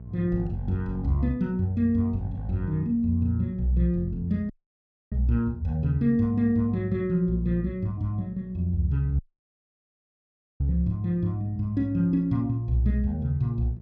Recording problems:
electrical hum; 60 Hz, harmonics up to 480 Hz, SNR 17 dB
dropout; at 4.5 s for 0.5 s and at 9 s for 1.5 s

